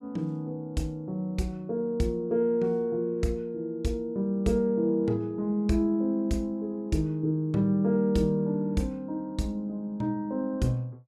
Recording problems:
none

